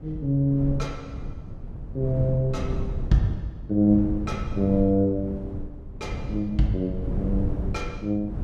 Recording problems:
wind on the microphone; below 140 Hz, SNR 8 dB

